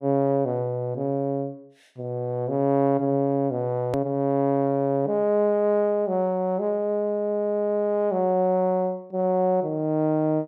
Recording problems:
edit click; at 4 s

